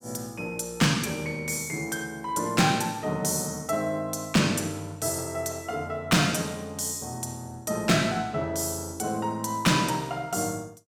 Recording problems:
distortion; hard clipping, uneven, signal-to-distortion ratio 11 dB

